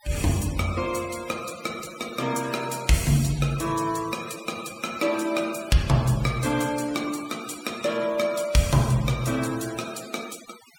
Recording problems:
noise reduction artefacts; signal-to-artefact ratio 15 dB

